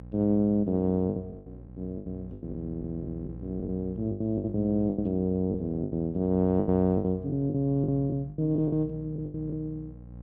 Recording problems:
mains hum; 60 Hz, harmonics up to 600 Hz, SNR 16 dB
packet loss; 14% of the sound replaced, filled with the last packet

